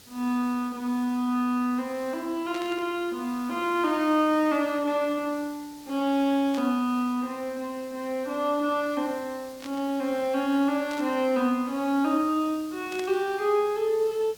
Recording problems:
background hiss; SNR 21 dB
static burst; 5 times, first at 2.5 s; peak -9 dB vs average level

